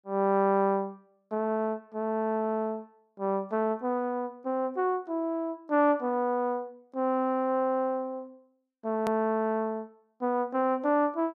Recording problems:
edit click; at 9 s

